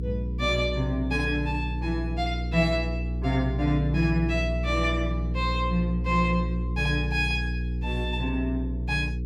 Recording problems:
hum; 60 Hz, harmonics up to 480 Hz, SNR 2 dB

